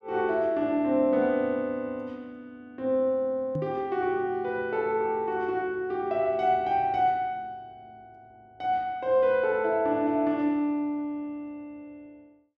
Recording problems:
microphone thump; at 3.5 s; peak -2 dB vs average level

